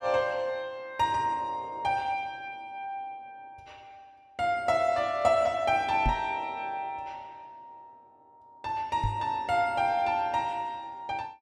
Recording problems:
microphone bump; at 6 s and at 9 s; peak +3 dB vs average level

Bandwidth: 15 kHz